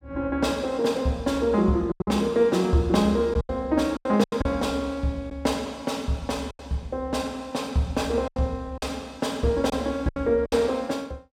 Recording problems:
packet loss; 7% of the sound replaced, filled with silence

